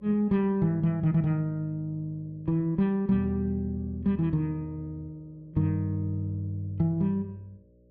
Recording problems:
hum; 60 Hz, harmonics up to 600 Hz, SNR 30 dB

